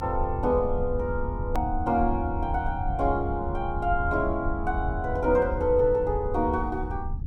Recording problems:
low-frequency rumble; below 82 Hz, SNR 6 dB
edit click; at 1.5 s

